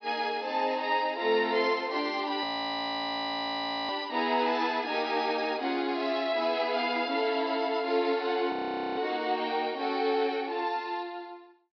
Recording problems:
low-pass filter; nothing above 5.5 kHz
frozen audio; at 2.5 s for 1.5 s and at 8.5 s

